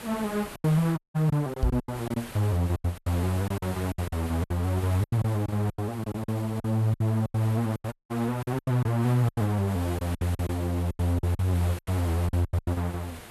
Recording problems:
hiss; SNR 15 dB
lost packets; 15% of the sound replaced, filled with silence
audio cutting out; at 1 s and at 8 s
microphone thump; at 1.5 s; peak +5 dB vs average level

